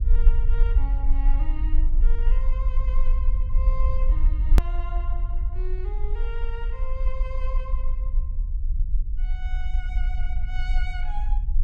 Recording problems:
rumble; below 42 Hz, strongest tone 24 Hz, SNR -14 dB
hard cut with a click; at 4.5 s

